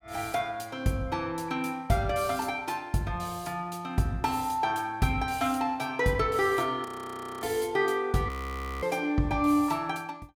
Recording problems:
frozen audio; at 7 s for 0.5 s and at 8.5 s for 0.5 s

